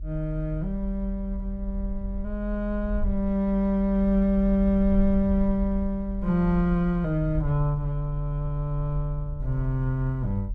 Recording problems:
rumble; below 46 Hz, strongest tone 42 Hz, SNR 8 dB

